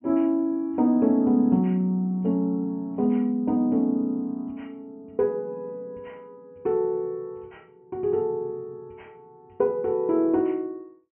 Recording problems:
treble cut off; nothing above 3.2 kHz

